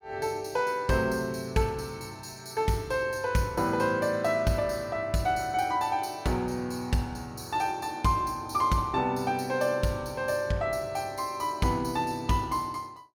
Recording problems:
none

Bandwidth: 18 kHz